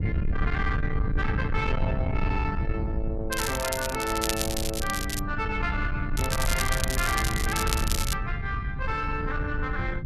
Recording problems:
distorted audio; soft clipping, signal-to-distortion ratio 10 dB
rumble; below 120 Hz, SNR 1 dB
crackle; from 3.5 to 5 s and from 6 to 8 s; loose cable, SNR 2 dB

